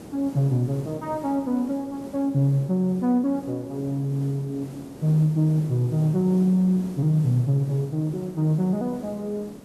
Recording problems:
hiss; SNR 17 dB

